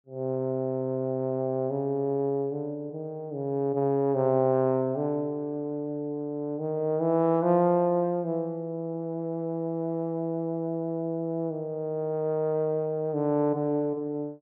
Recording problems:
treble cut off; nothing above 5.3 kHz

